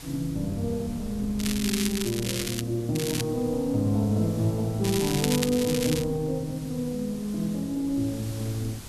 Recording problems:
background hiss; slope 0 dB per octave, SNR 19 dB
wind on the microphone; below 160 Hz, SNR 16 dB
crackle; from 1.5 to 2.5 s, at 3 s and from 5 to 6 s; loose cable, SNR 5 dB

